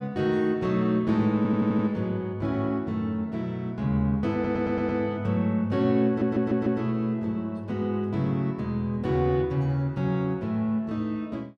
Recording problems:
audio stuttering; at 1.5 s, at 4.5 s and at 6 s

